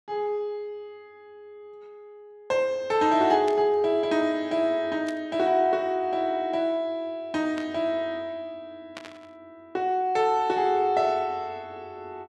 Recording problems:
burst of static; 4 times, first at 3.5 s; peak -9 dB vs average level

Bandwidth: 12 kHz